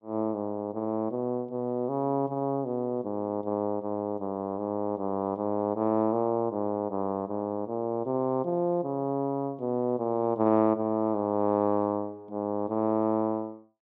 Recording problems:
none

